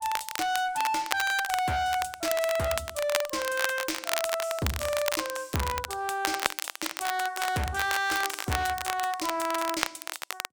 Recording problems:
distorted audio; hard clipping, uneven, signal-to-distortion ratio 7 dB
crackle; vinyl, SNR 4 dB

